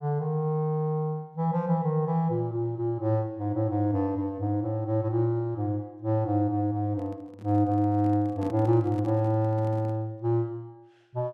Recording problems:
microphone handling noise; from 7 to 10 s; peak -8 dB vs average level

